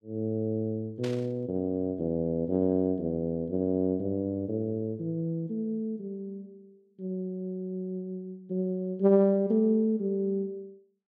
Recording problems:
static burst; at 1 s; peak -9 dB vs average level

